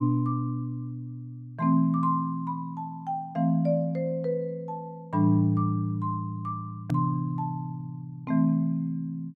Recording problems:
click at an edit; at 7 s

